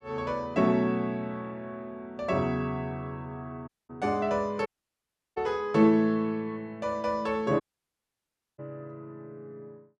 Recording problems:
dropout; at 3.5 s, at 4.5 s for 0.5 s and at 7.5 s for 1 s

